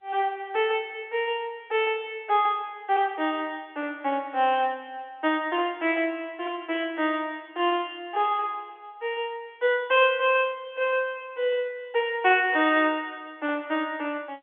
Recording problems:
telephone audio; 280 Hz to 3.4 kHz, G.711

